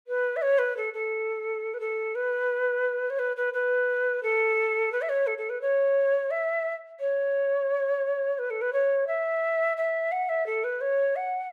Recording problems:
none

